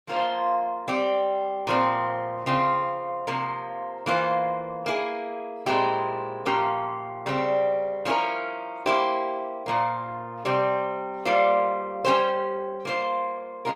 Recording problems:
codec artefacts; Opus, log-spectral distance 2 dB, nothing above 18.9 kHz

